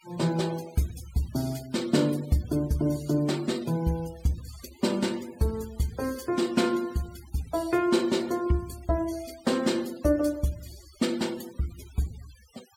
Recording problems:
noise reduction artefacts; signal-to-artefact ratio 20 dB

